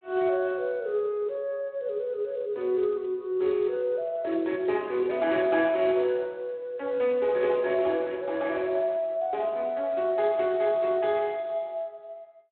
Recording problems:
telephone audio; 280 Hz to 3.9 kHz, Speex

